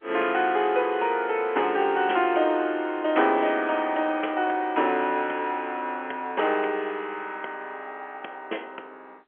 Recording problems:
phone line; 280 Hz to 3.3 kHz, G.711

